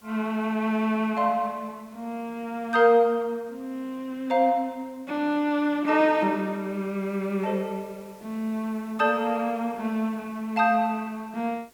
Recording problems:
hiss; slope -3 dB per octave, SNR 30 dB

